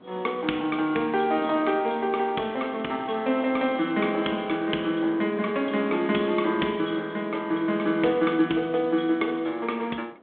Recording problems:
phone line; 170 Hz to 3.5 kHz, G.726
wind noise; below 780 Hz, SNR 22 dB

